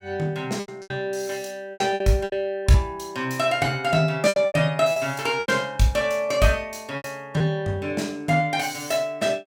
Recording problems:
lost packets; 8% of the sound replaced, filled with repeated pitch periods

